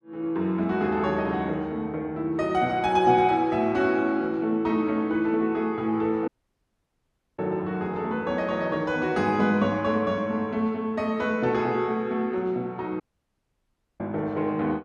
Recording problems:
audio cutting out; at 6.5 s for 1 s and at 13 s for 1 s

